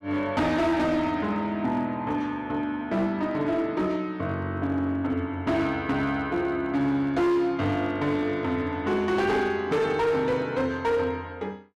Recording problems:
distorted audio; hard clipping, signal-to-distortion ratio 10 dB

